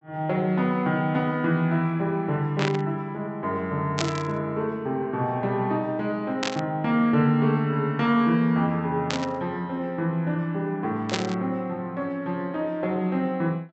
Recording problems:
treble missing; nothing above 8 kHz
static burst; 5 times, first at 2.5 s; peak +2 dB vs average level

